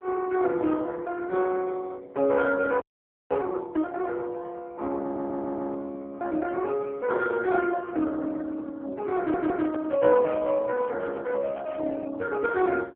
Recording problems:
telephone audio; 240 Hz to 3.3 kHz, AMR-NB
frozen audio; at 3 s for 0.5 s
audio stuttering; at 5 s and at 9 s
handling noise; from 9 to 12 s; peak -8 dB vs average level

